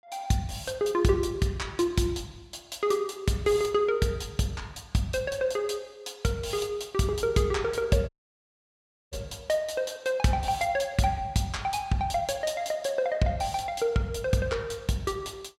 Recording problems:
dropout; at 8 s for 1 s

